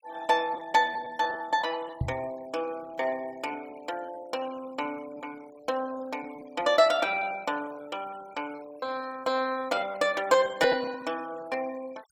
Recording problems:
noise reduction artefacts; signal-to-artefact ratio 22 dB
packet loss; 10% of the sound replaced, filled with repeated pitch periods
knock on the microphone; at 2 s; peak +3 dB vs average level

